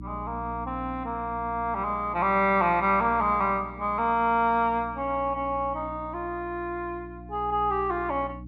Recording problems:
hum; 60 Hz, harmonics up to 300 Hz, SNR 16 dB

